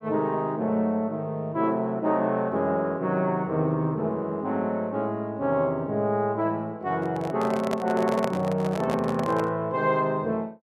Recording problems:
microphone handling noise; from 7 to 9.5 s; peak +1 dB vs average level

